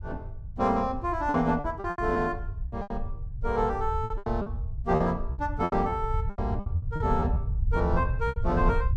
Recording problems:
low-frequency rumble; below 90 Hz, SNR 5 dB
packet loss; 13% of the sound replaced, filled with repeated pitch periods

